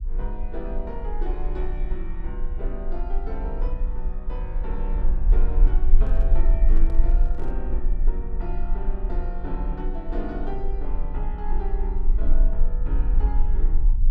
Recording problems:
rumble; below 38 Hz, strongest tone 22 Hz, SNR -9 dB
handling noise; from 6 to 7.5 s; peak -3 dB vs average level

